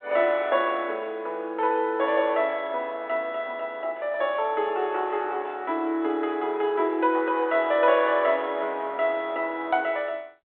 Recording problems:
phone line; 280 Hz to 3.6 kHz, G.726

